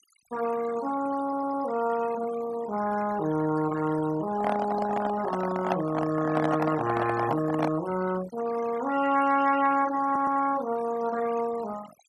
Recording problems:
denoising artefacts; signal-to-artefact ratio 14 dB
audio stuttering; at 1 s and at 10 s
handling noise; from 4.5 to 8 s; peak +3 dB vs average level

